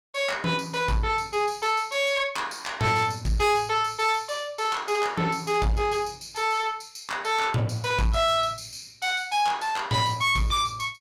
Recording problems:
distortion; soft clipping, signal-to-distortion ratio 11 dB

